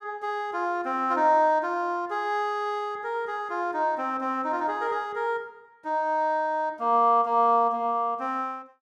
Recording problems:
none

